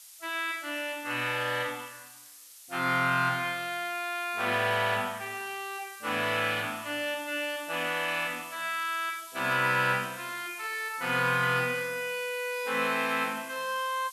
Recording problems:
hiss; SNR 17 dB

